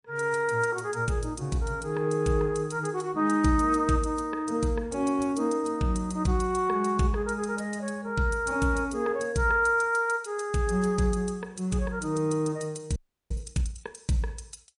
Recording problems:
lossy codec; MP3, log-spectral distance 3 dB
audio freezing; at 13 s

